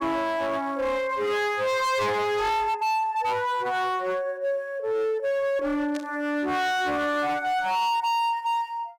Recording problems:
distorted audio; hard clipping, signal-to-distortion ratio 7 dB
static burst; at 6 s; peak -11 dB vs average level

